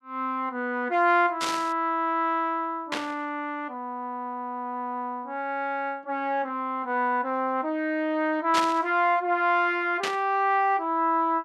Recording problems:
burst of static; 4 times, first at 1.5 s; peak +2 dB vs average level

